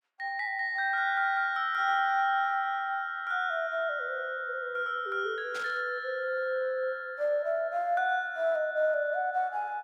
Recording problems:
burst of static; at 5.5 s; peak -9 dB vs average level

